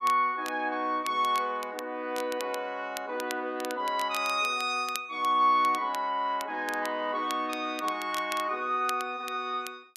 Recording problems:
crackle; vinyl, SNR 15 dB

